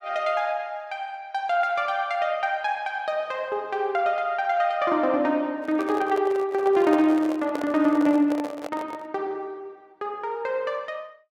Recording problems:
microphone handling noise; from 5.5 to 9 s; peak -4 dB vs average level

